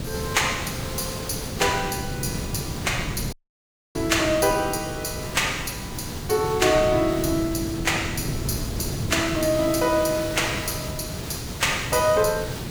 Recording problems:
hiss; slope -3 dB per octave, SNR 12 dB
wind noise; below 250 Hz, SNR 8 dB
audio cutting out; at 3.5 s for 0.5 s

